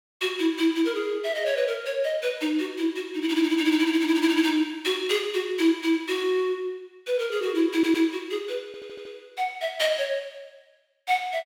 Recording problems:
burst of static; at 5 s; peak -8 dB vs average level
audio stuttering; at 7.5 s and at 8.5 s

